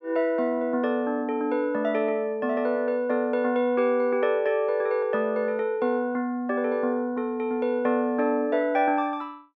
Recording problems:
none

